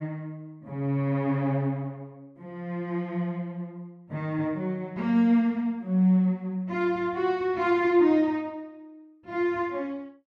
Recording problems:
none

